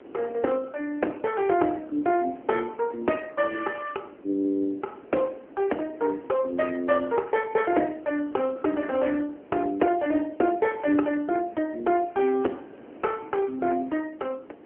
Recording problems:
phone line; 240 Hz to 3.1 kHz, AMR-NB
wind noise; below 550 Hz, SNR 20 dB

